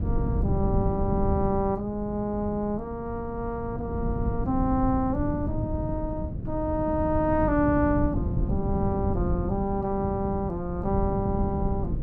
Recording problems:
wind noise; below 180 Hz, SNR 3 dB

